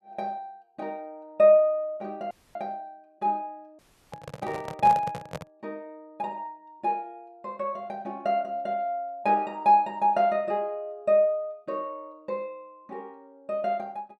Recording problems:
dropout; at 2.5 s and at 4 s
microphone handling noise; from 4 to 5.5 s; peak -5 dB vs average level

